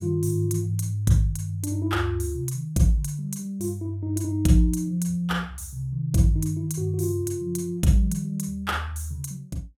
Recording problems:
none

